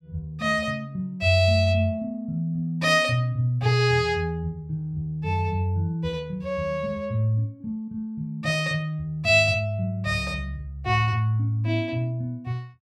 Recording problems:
none

